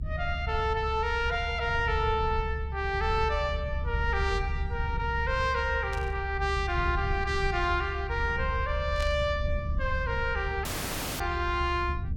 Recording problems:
rumble; below 76 Hz, SNR 4 dB
burst of static; at 6 s and at 9 s; peak -7 dB vs average level
dropout; at 11 s for 0.5 s

